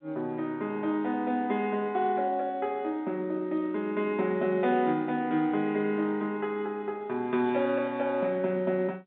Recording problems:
telephone audio; 150 Hz to 3.9 kHz, G.711

